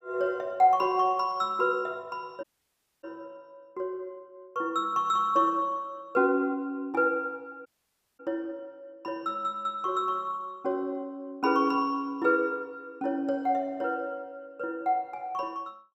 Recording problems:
dropout; at 2.5 s for 0.5 s and at 7.5 s for 0.5 s

